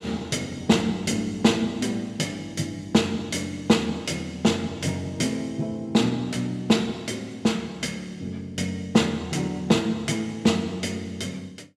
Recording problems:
none

